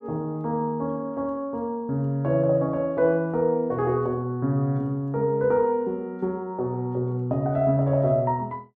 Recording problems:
none

